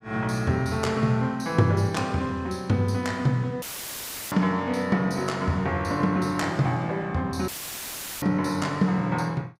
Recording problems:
audio cutting out; at 3.5 s for 0.5 s and at 7.5 s for 0.5 s; filled with static

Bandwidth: 15.5 kHz